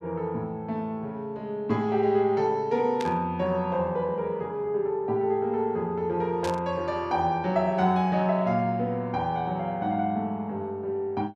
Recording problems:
static burst; at 3 s and at 6.5 s; peak -6 dB vs average level

